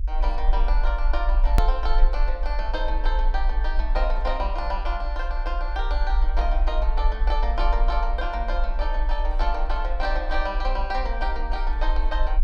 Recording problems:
rumble; below 48 Hz, strongest tone 30 Hz, SNR -3 dB
click at an edit; at 1.5 s

